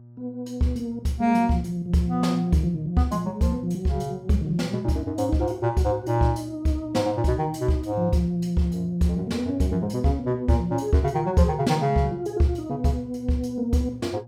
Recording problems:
electrical hum; 60 Hz, harmonics up to 600 Hz, SNR 22 dB

